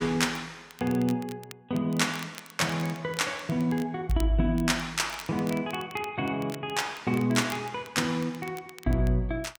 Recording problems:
crackling; vinyl, SNR 19 dB

